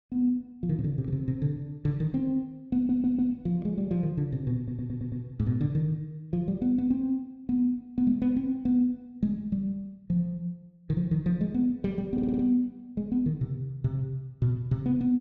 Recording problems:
audio stuttering; at 3 s, at 4.5 s and at 12 s

